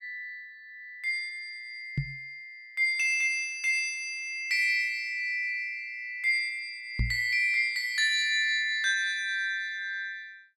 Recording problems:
knock on the microphone; at 2 s and at 7 s; peak +2 dB vs average level

